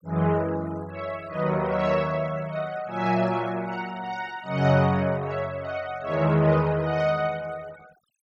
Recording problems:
noise reduction artefacts; signal-to-artefact ratio 22 dB

